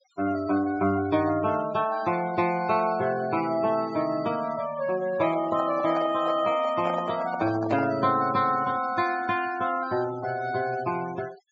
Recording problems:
low-pass filter; nothing above 8 kHz
denoising artefacts; signal-to-artefact ratio 16 dB
microphone handling noise; from 5 to 8 s; peak 0 dB vs average level

